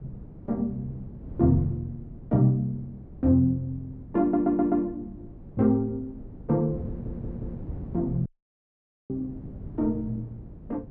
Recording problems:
wind noise; below 220 Hz, SNR 14 dB
stutter; at 4 s and at 7 s
audio cutting out; at 8.5 s for 1 s

